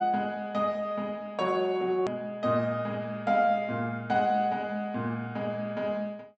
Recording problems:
treble cut off; nothing above 8 kHz
hard cut with a click; at 2 s

